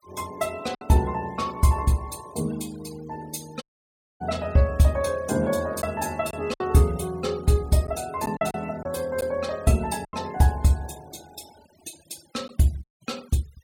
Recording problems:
noise reduction artefacts; signal-to-artefact ratio 24 dB
lost packets; 4% of the sound replaced, filled with silence
audio cutting out; at 3.5 s for 0.5 s and at 13 s

